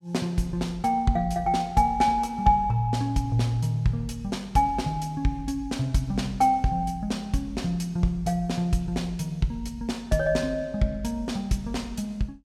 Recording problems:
none

